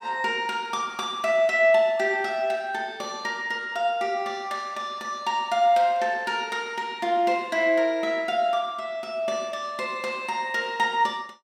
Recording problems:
none

